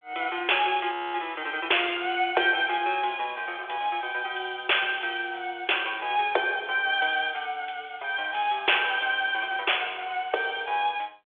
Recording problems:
telephone audio; 320 Hz to 3.5 kHz, G.726
frozen audio; at 1 s

